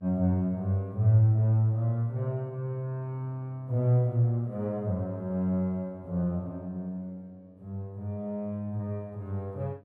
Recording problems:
electrical hum; 50 Hz, harmonics up to 1.2 kHz, SNR 31 dB

